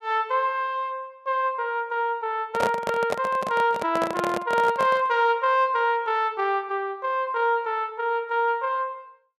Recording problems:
handling noise; from 2.5 to 5 s; peak +2 dB vs average level

